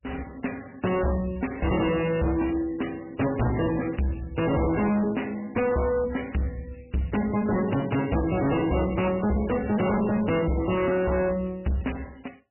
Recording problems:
lossy codec; MP3, log-spectral distance 7 dB, nothing above 2.9 kHz
distortion; hard clipping, signal-to-distortion ratio 6 dB

